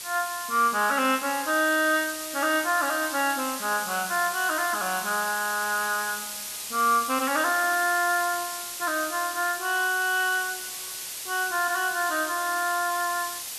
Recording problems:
background hiss; slope +2 dB per octave, SNR 7 dB

